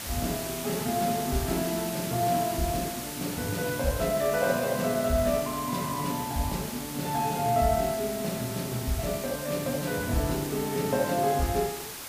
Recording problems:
hiss; slope -1 dB per octave, SNR 7 dB

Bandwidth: 15 kHz